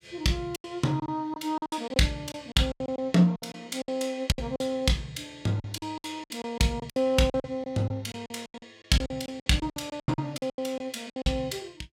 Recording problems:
lost packets; 17% of the sound replaced, filled with silence

